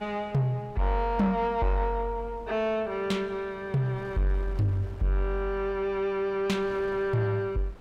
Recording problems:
distorted audio; soft clipping, signal-to-distortion ratio 11 dB
wind noise; below 700 Hz, SNR 21 dB

